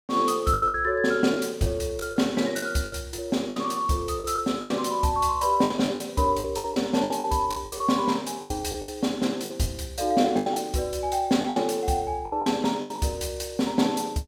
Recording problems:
packet loss; 12% of the sound replaced, filled with the last packet

